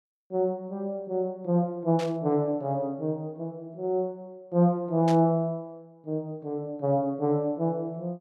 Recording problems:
static burst; at 2 s and at 5 s; peak -7 dB vs average level

